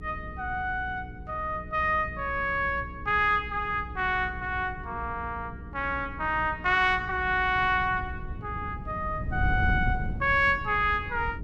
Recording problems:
hum; 60 Hz, harmonics up to 480 Hz, SNR 17 dB
wind noise; below 130 Hz, SNR 11 dB

